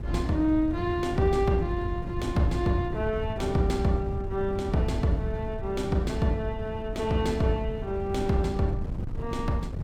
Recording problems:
wind on the microphone; below 140 Hz, SNR 7 dB

